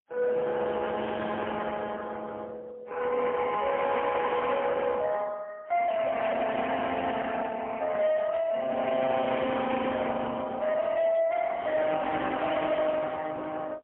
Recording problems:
telephone audio; 260 Hz to 3.3 kHz, AMR-NB, then MP3
distortion; hard clipping, signal-to-distortion ratio 11 dB

